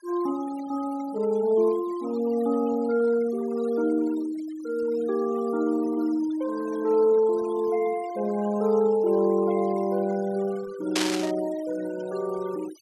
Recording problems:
noise reduction artefacts; signal-to-artefact ratio 20 dB
burst of static; at 11 s; peak +3 dB vs average level

